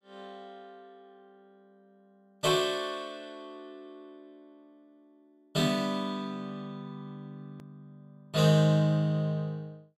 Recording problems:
hard cut with a click; at 7.5 s

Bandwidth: 15.5 kHz